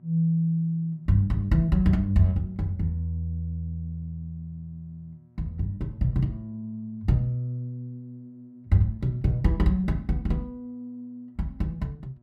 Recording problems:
electrical hum; 60 Hz, harmonics up to 960 Hz, SNR 31 dB

